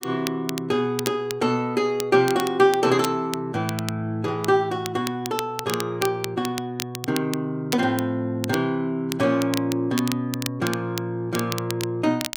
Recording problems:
crackle; vinyl, SNR 11 dB

